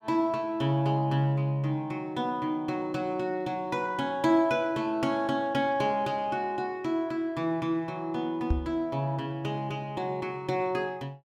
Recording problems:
microphone bump; at 8.5 s; peak +5 dB vs average level

